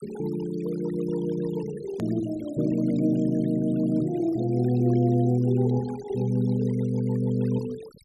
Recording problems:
denoising artefacts; signal-to-artefact ratio 22 dB
click at an edit; at 2 s

